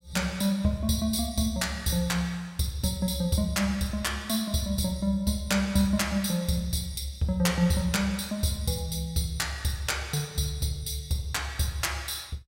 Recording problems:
none

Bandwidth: 16 kHz